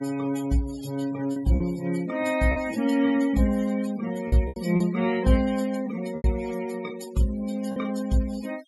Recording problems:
denoising artefacts; signal-to-artefact ratio 17 dB
lost packets; 5% of the sound replaced, filled with repeated pitch periods

